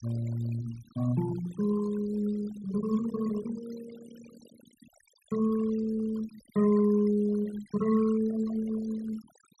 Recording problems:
noise reduction artefacts; signal-to-artefact ratio 19 dB

